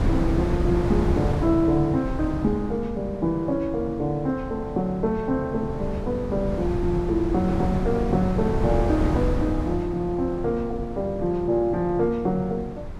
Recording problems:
wind noise; below 240 Hz, SNR 5 dB

